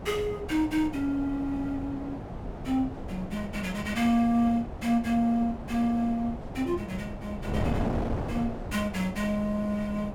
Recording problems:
wind noise; below 520 Hz, SNR 8 dB

